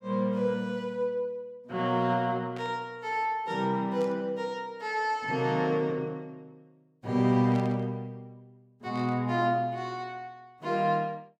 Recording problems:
static burst; 4 times, first at 2.5 s; peak -14 dB vs average level

